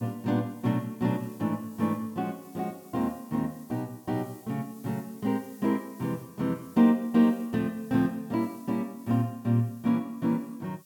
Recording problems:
hiss; slope +5 dB per octave, SNR 25 dB

